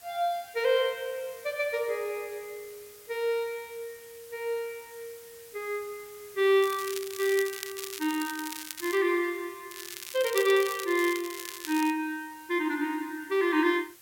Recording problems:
background hiss; slope 0 dB per octave, SNR 21 dB
crackle; from 6.5 to 9 s and from 9.5 to 12 s; loose cable, SNR 10 dB

